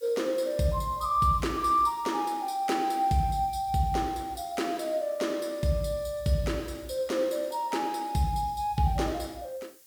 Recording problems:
hiss; SNR 25 dB

